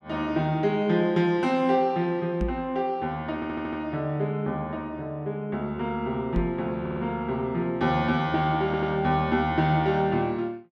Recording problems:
knock on the microphone; at 2.5 s and at 6.5 s; peak +1 dB vs average level
stutter; at 3.5 s, at 7 s and at 8.5 s

